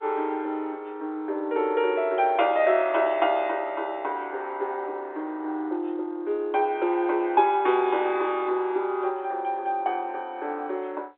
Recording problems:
telephone audio; 260 Hz to 3.7 kHz, G.711

